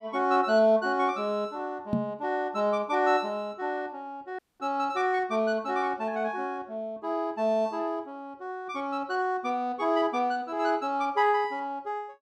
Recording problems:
microphone thump; at 2 s; peak +4 dB vs average level
dropout; at 4.5 s

